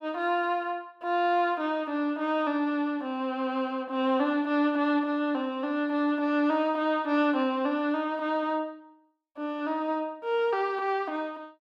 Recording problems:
none

